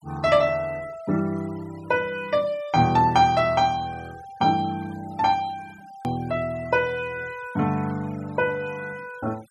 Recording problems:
noise reduction artefacts; signal-to-artefact ratio 23 dB
hard cut with a click; at 6 s

